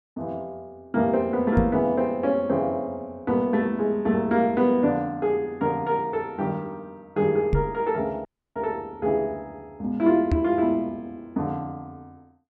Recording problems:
microphone bump; at 1.5 s, at 7.5 s and at 10 s; peak +5 dB vs average level
dropout; at 8.5 s

